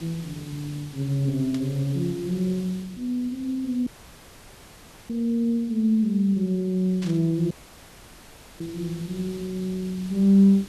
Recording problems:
background hiss; SNR 20 dB
static burst; at 1.5 s and at 7 s; peak -10 dB vs average level
dropout; at 4 s for 1 s and at 7.5 s for 1 s

